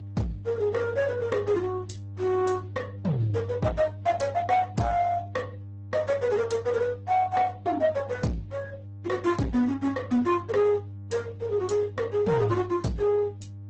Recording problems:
lossy codec; Speex, then Opus, log-spectral distance 3 dB, nothing above 8 kHz
distorted audio; soft clipping, signal-to-distortion ratio 12 dB
hum; 50 Hz, harmonics up to 300 Hz, SNR 14 dB

